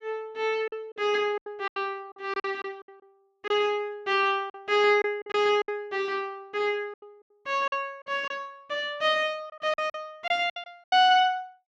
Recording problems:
packet loss; 11% of the sound replaced, filled with silence

